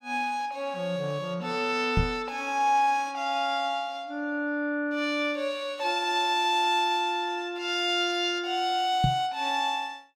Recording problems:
microphone bump; at 2 s and at 9 s; peak +5 dB vs average level

